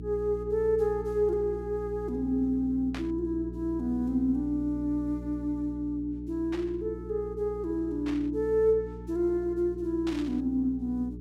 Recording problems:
hum; 60 Hz, harmonics up to 420 Hz, SNR 11 dB
static burst; 4 times, first at 3 s; peak -7 dB vs average level

